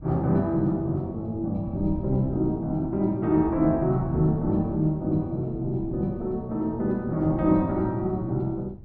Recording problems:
wind on the microphone; below 130 Hz, SNR 15 dB

